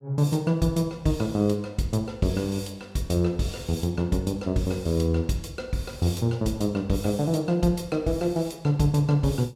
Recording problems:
none

